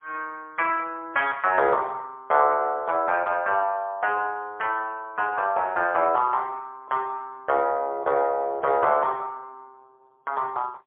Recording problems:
telephone audio; 300 Hz to 3.1 kHz, AMR-NB, then MP3

